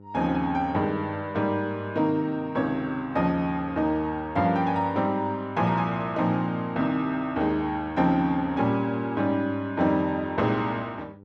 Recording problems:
hum; 50 Hz, harmonics up to 1 kHz, SNR 23 dB

